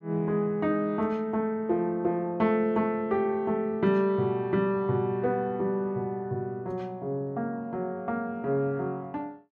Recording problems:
none

